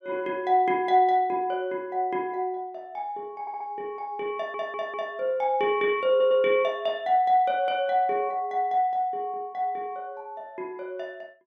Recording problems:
stutter; at 3.5 s, at 4.5 s and at 6 s

